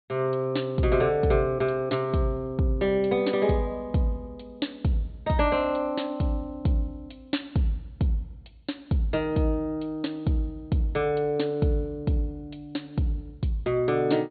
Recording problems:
treble cut off; nothing above 4.4 kHz

